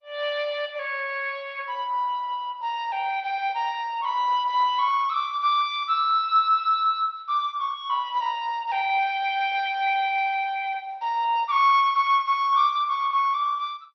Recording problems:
lossy codec; MP2, log-spectral distance 3 dB, nothing above 5.5 kHz

